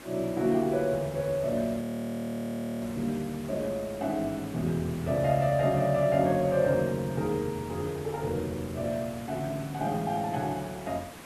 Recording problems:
hiss; slope -4 dB per octave, SNR 16 dB
frozen audio; at 2 s for 1 s

